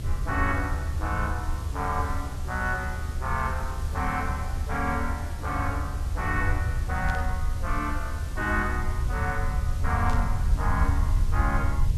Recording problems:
background hiss; SNR 13 dB
rumble; below 78 Hz, SNR -1 dB
static burst; at 7 s and at 10 s; peak -6 dB vs average level

